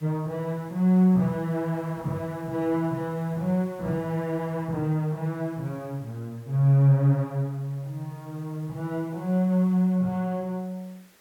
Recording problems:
background hiss; slope -3 dB per octave, SNR 29 dB

